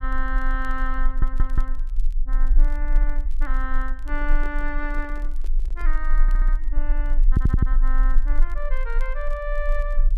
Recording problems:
low-frequency rumble; below 34 Hz, strongest tone 20 Hz, SNR -8 dB
crackling; vinyl, SNR 26 dB
stutter; at 1 s, at 6 s and at 7.5 s
microphone handling noise; from 4 to 6 s; peak -6 dB vs average level

